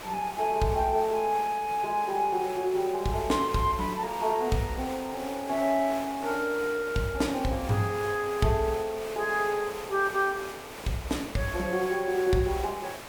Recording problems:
background hiss; SNR 13 dB

